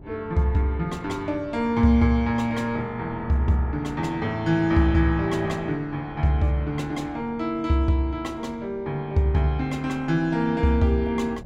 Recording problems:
wind on the microphone; below 280 Hz, SNR 21 dB

